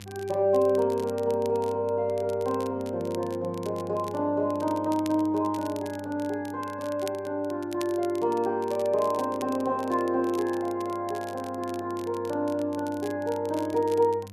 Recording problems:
hum; 50 Hz, harmonics up to 700 Hz, SNR 18 dB
crackling; vinyl, SNR 21 dB

